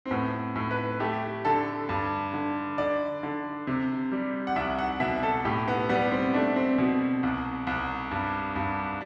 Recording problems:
none

